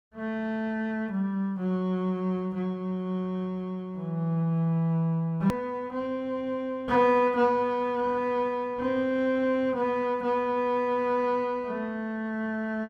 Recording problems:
edit click; at 5.5 s

